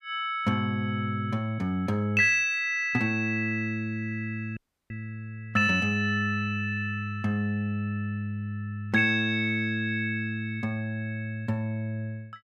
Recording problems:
dropout; at 4.5 s

